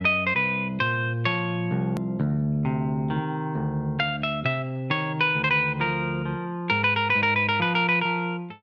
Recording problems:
edit click; at 2 s

